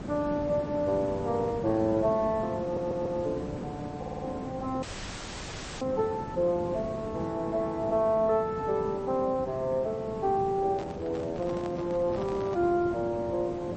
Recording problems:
codec artefacts; MP3, log-spectral distance 3 dB, nothing above 6.9 kHz
background hiss; slope -8 dB per octave, SNR 9 dB
stutter; at 2.5 s and at 4 s
dropout; at 5 s for 1 s
microphone handling noise; from 11 to 13 s; peak -9 dB vs average level

